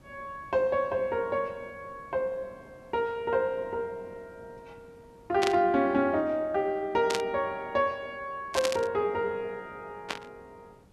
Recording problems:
hiss; slope -7 dB per octave, SNR 28 dB
static burst; 4 times, first at 5.5 s; peak +2 dB vs average level

